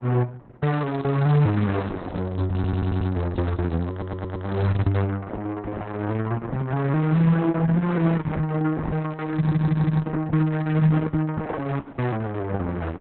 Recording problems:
lossy compression; Opus, log-spectral distance 3 dB, nothing above 4 kHz
crackle; from 0.5 to 5 s and at 9.5 s; loose cable, SNR 27 dB
audio stuttering; at 2.5 s, at 4 s and at 9.5 s

